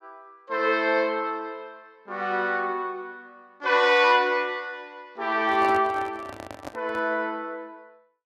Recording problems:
microphone handling noise; from 5.5 to 7 s; peak -8 dB vs average level

